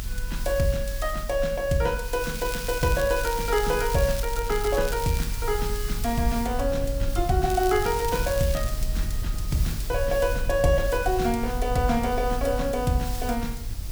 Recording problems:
hiss; slope +4 dB per octave, SNR 13 dB
low-frequency rumble; below 54 Hz, strongest tone 26 Hz, SNR 7 dB
crackle; from 2 to 5.5 s and from 7.5 to 8.5 s; loose cable, SNR 12 dB

